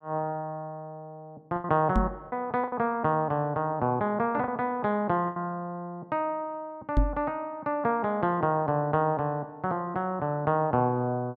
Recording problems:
packet loss; 3% of the sound replaced, filled with the last packet
knock on the microphone; at 2 s and at 7 s; peak +7 dB vs average level

